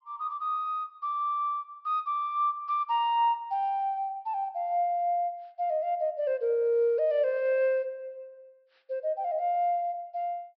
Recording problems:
low-pass filter; nothing above 5.5 kHz

